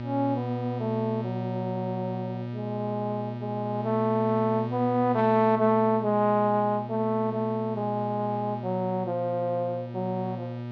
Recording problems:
electrical hum; 60 Hz, harmonics up to 1.6 kHz, SNR 8 dB

